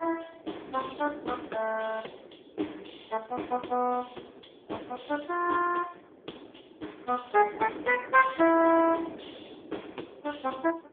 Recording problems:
phone line; 260 Hz to 2.6 kHz, AMR-NB
wind on the microphone; below 550 Hz, SNR 18 dB

